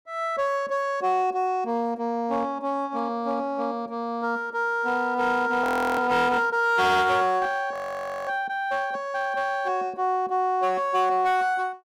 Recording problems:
distortion; hard clipping, uneven, signal-to-distortion ratio 12 dB
audio freezing; at 5.5 s and at 7.5 s for 0.5 s

